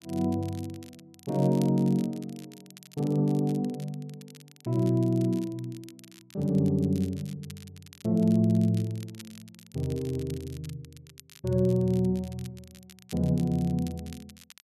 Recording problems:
crackling; vinyl, SNR 23 dB

